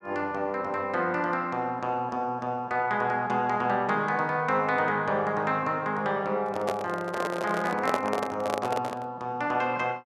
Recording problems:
microphone handling noise; from 6.5 to 9 s; peak +4 dB vs average level

